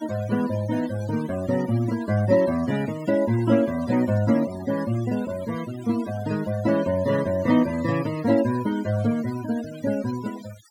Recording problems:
noise reduction artefacts; signal-to-artefact ratio 17 dB

